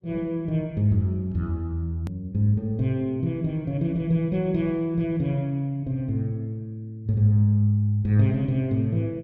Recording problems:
click at an edit; at 2 s

